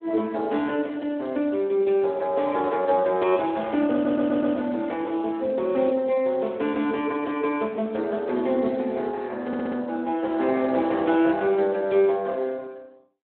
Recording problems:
telephone audio; 240 Hz to 3.8 kHz, Speex
audio stuttering; at 4 s and at 9.5 s

